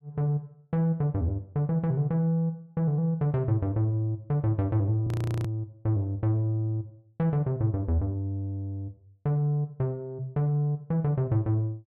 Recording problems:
frozen audio; at 5 s

